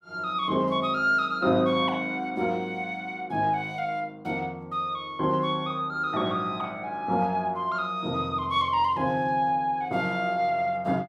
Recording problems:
none

